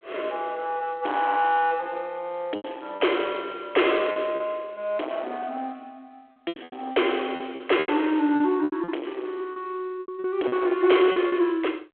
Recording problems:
telephone audio; 260 Hz to 3.4 kHz, G.726
distorted audio; soft clipping, signal-to-distortion ratio 10 dB
packet loss; 9% of the sound replaced, filled with repeated pitch periods

